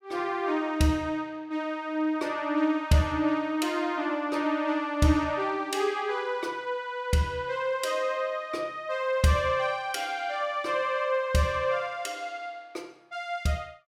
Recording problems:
none

